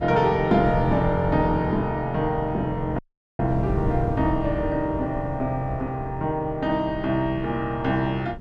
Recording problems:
wind noise; below 150 Hz, SNR 10 dB
dropout; at 3 s

